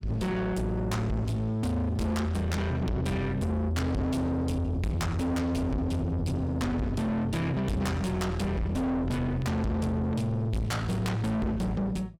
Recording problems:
distorted audio; soft clipping, signal-to-distortion ratio 6 dB

